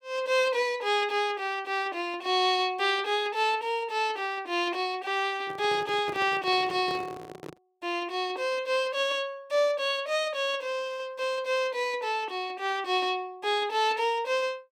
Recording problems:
microphone handling noise; from 5.5 to 7.5 s; peak -7 dB vs average level

